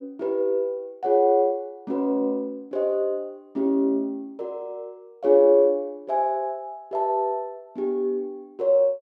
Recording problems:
none

